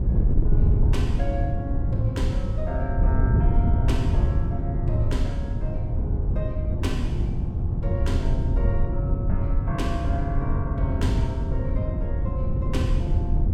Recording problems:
wind noise; below 110 Hz, SNR -8 dB

